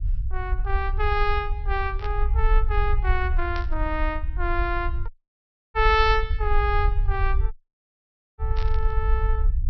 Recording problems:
treble cut off; nothing above 5.8 kHz
low-frequency rumble; below 56 Hz, SNR 0 dB
static burst; at 2 s, at 3.5 s and at 8.5 s; peak -7 dB vs average level
dropout; at 5 s for 0.5 s and at 7.5 s for 1 s

